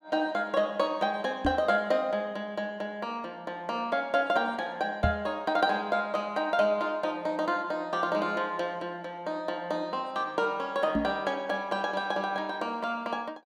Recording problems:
microphone bump; at 1.5 s, at 5 s and at 11 s; peak +5 dB vs average level

